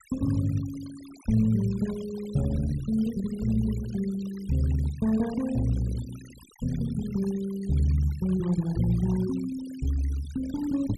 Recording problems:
noise reduction artefacts; signal-to-artefact ratio 20 dB

